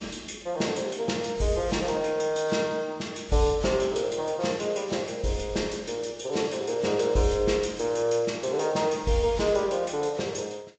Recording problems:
treble cut off; nothing above 7.3 kHz
lossy codec; Vorbis, log-spectral distance 4 dB

